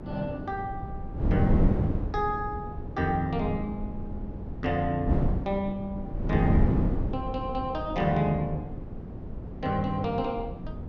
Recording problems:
hum; 60 Hz, harmonics up to 480 Hz, SNR 21 dB
wind on the microphone; below 220 Hz, SNR 2 dB

